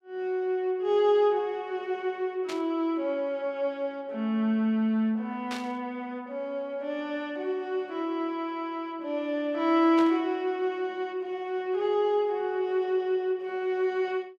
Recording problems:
static burst; at 2.5 s, at 5.5 s and at 10 s; peak -5 dB vs average level

